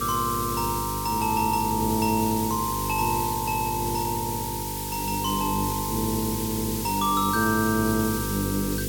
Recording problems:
hum; 50 Hz, harmonics up to 500 Hz, SNR 8 dB
background hiss; slope +4 dB per octave, SNR 5 dB

